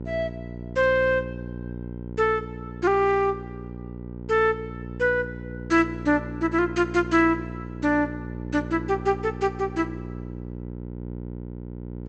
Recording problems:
low-pass filter; nothing above 8 kHz
hum; 60 Hz, harmonics up to 960 Hz, SNR 11 dB

